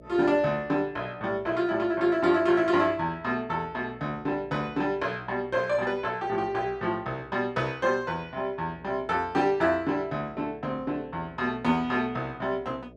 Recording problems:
electrical hum; 60 Hz, harmonics up to 660 Hz, SNR 24 dB

